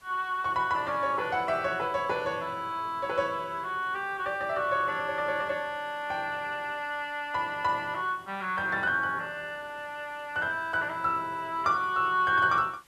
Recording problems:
background hiss; slope -1 dB per octave, SNR 29 dB

